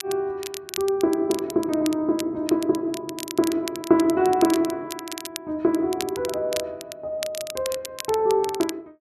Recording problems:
crackling; vinyl, SNR 12 dB

